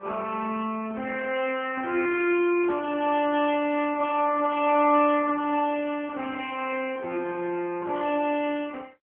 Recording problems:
telephone audio; 260 Hz to 3.2 kHz, AMR-NB

